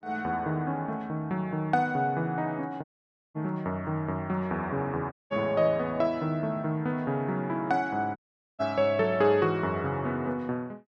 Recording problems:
dropout; at 3 s for 0.5 s, at 5 s and at 8 s

